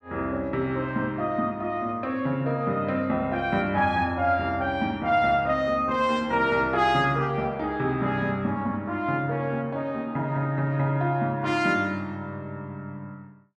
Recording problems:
none

